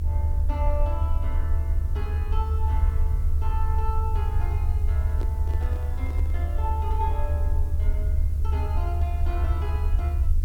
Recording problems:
electrical hum; 50 Hz, harmonics up to 1.1 kHz, SNR 13 dB
hiss; SNR 18 dB
low-frequency rumble; below 76 Hz, SNR -11 dB
microphone handling noise; from 5 to 6.5 s; peak +2 dB vs average level

